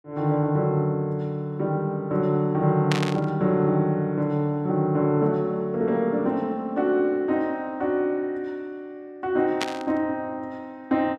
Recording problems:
burst of static; at 3 s and at 9.5 s; peak +2 dB vs average level

